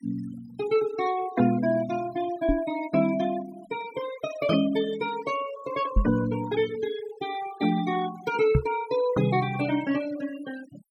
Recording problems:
denoising artefacts; signal-to-artefact ratio 16 dB
microphone thump; at 2.5 s, at 6 s and at 8.5 s; peak +8 dB vs average level

